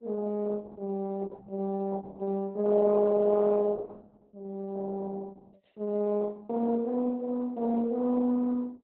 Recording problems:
lossy compression; Opus, log-spectral distance 3 dB, nothing above 3.9 kHz

